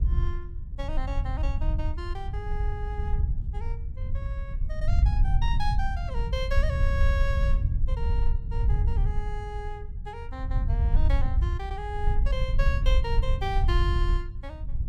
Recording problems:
rumble; below 70 Hz, SNR -8 dB

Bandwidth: 16.5 kHz